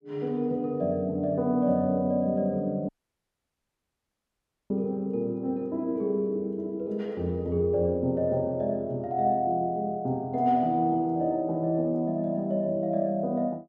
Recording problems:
dropout; at 3 s for 2 s

